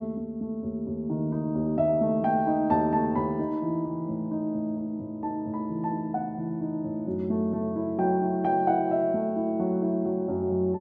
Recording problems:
treble cut off; nothing above 7.8 kHz

